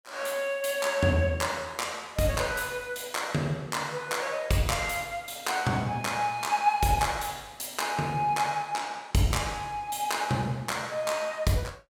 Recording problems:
none

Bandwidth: 17.5 kHz